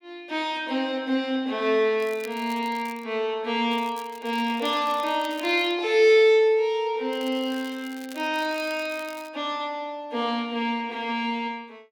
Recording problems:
crackling; from 2 to 3 s, from 3.5 to 5.5 s and from 7 to 9.5 s; loose cable, SNR 21 dB

